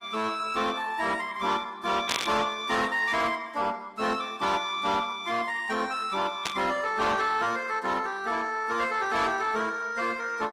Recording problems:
codec artefacts; Opus, log-spectral distance 4 dB, nothing above 18.3 kHz
distortion; soft clipping, signal-to-distortion ratio 11 dB
burst of static; at 2 s and at 6.5 s; peak +3 dB vs average level

